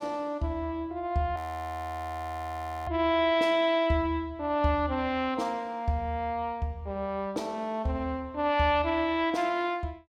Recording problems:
frozen audio; at 1.5 s for 1.5 s

